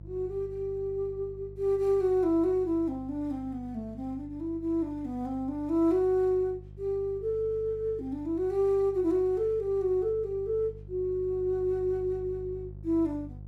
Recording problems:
hum; 50 Hz, harmonics up to 500 Hz, SNR 17 dB

